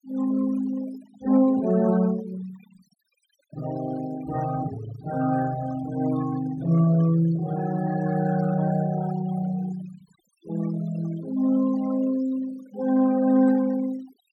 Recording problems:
noise reduction artefacts; signal-to-artefact ratio 17 dB

